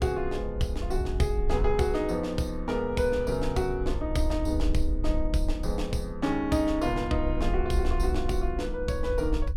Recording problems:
low-frequency rumble; below 60 Hz, SNR 4 dB

